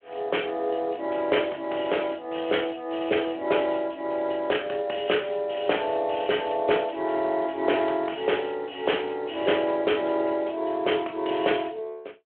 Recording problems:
telephone audio; 300 Hz to 3.4 kHz, Speex

